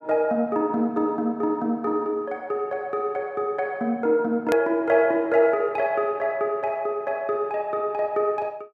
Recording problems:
hard cut with a click; at 4.5 s

